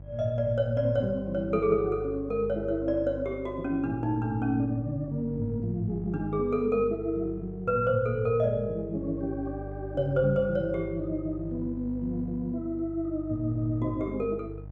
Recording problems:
hum; 50 Hz, harmonics up to 650 Hz, SNR 13 dB

